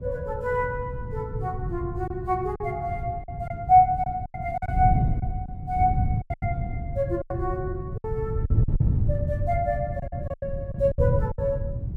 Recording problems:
wind noise; below 140 Hz, SNR 2 dB
packet loss; 9% of the sound replaced, filled with silence

